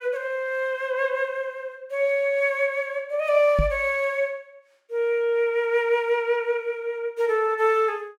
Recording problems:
knock on the microphone; at 3.5 s; peak +3 dB vs average level

